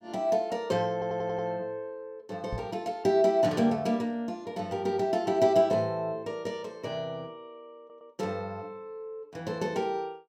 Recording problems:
audio stuttering; at 1 s and at 8 s
microphone bump; at 2.5 s; peak -4 dB vs average level

